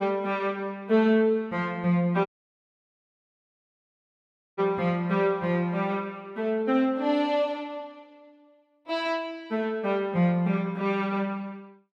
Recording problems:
dropout; at 2.5 s for 2.5 s

